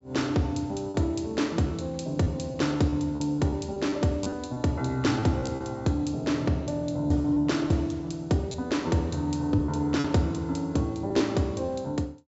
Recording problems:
treble cut off; nothing above 7.6 kHz
lost packets; 6% of the sound replaced, filled with repeated pitch periods

